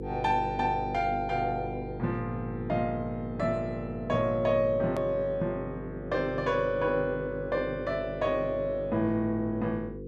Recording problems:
hum; 50 Hz, harmonics up to 500 Hz, SNR 9 dB
edit click; at 5 s

